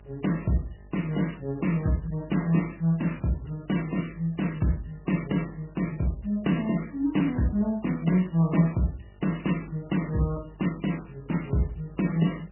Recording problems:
lossy compression; AAC, then MP3, log-spectral distance 7 dB, nothing above 2.9 kHz
hum; 50 Hz, harmonics up to 850 Hz, SNR 24 dB

